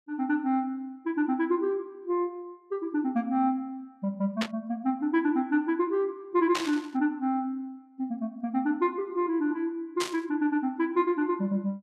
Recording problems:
static burst; at 4.5 s, at 6.5 s and at 10 s; peak +2 dB vs average level

